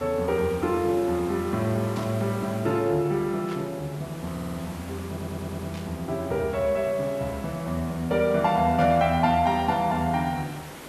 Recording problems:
background hiss; slope -5 dB per octave, SNR 16 dB
burst of static; 4 times, first at 2 s; peak -11 dB vs average level
stutter; at 4.5 s and at 5 s

